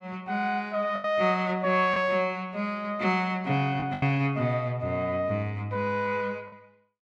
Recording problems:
lost packets; 4% of the sound replaced, filled with the last packet

